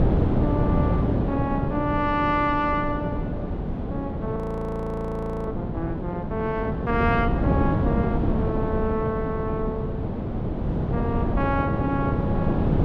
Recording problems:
wind on the microphone; below 330 Hz, SNR -2 dB
audio freezing; at 4.5 s for 1 s

